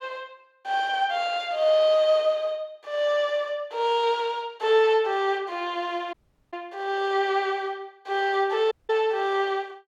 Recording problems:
dropout; at 6 s and at 8.5 s

